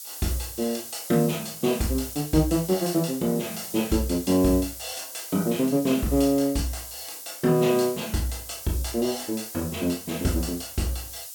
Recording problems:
background hiss; SNR 11 dB

